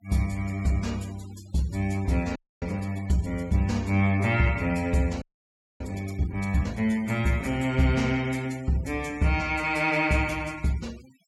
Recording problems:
denoising artefacts; signal-to-artefact ratio 22 dB
audio freezing; at 2.5 s and at 5 s for 0.5 s

